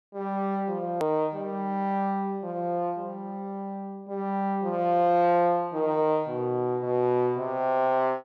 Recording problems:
edit click; at 1 s

